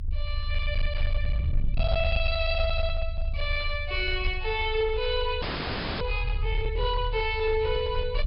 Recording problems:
treble missing; nothing above 5.5 kHz
distorted audio; hard clipping, uneven, signal-to-distortion ratio 10 dB
low-frequency rumble; below 76 Hz, strongest tone 26 Hz, SNR 3 dB
burst of static; at 1 s, at 3.5 s and at 5 s; peak -13 dB vs average level
frozen audio; at 5.5 s for 0.5 s

